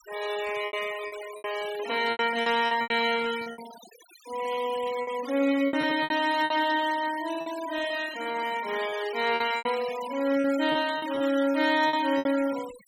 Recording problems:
noise reduction artefacts; signal-to-artefact ratio 15 dB
lost packets; 11% of the sound replaced, filled with repeated pitch periods

